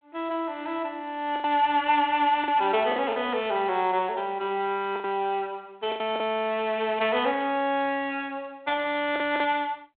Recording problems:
telephone audio; 280 Hz to 3.5 kHz, G.726
lost packets; 5% of the sound replaced, filled with the last packet

